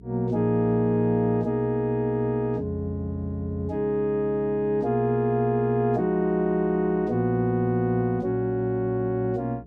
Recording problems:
electrical hum; 60 Hz, harmonics up to 420 Hz, SNR 22 dB

